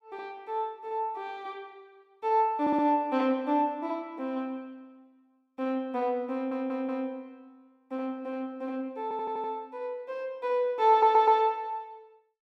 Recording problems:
audio stuttering; 4 times, first at 2.5 s

